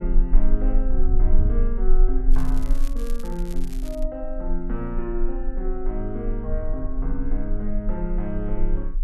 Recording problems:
rumble; below 30 Hz, strongest tone 22 Hz, SNR -3 dB
wind on the microphone; below 92 Hz, SNR 3 dB
crackling; from 2.5 to 4 s; loose cable, SNR 15 dB

